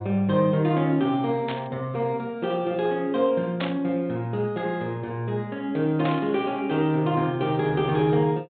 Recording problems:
low-pass filter; nothing above 4 kHz
static burst; at 1.5 s, at 3.5 s and at 6 s; peak -3 dB vs average level

